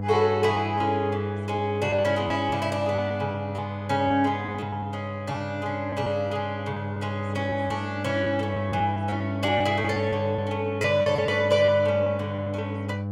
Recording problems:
electrical hum; 50 Hz, harmonics up to 1 kHz, SNR 7 dB
packet loss; 8% of the sound replaced, filled with repeated pitch periods

